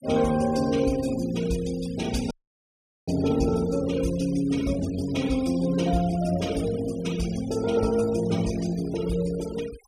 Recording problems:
denoising artefacts; signal-to-artefact ratio 17 dB
audio cutting out; at 2.5 s for 1 s

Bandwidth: 14.5 kHz